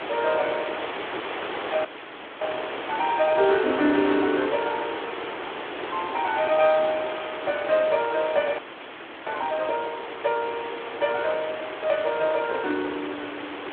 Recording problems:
phone line; 110 Hz to 3.6 kHz, Speex
background hiss; SNR 7 dB
frozen audio; at 2 s for 0.5 s and at 8.5 s for 0.5 s

